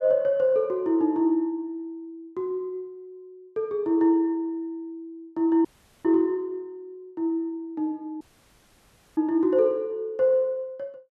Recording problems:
dropout; at 5.5 s and at 8 s for 1 s

